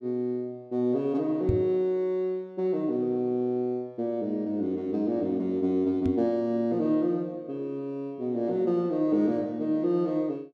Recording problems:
knock on the microphone; at 1.5 s and at 6 s; peak +4 dB vs average level

